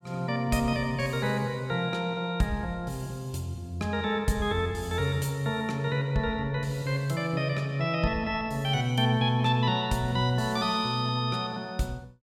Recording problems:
none

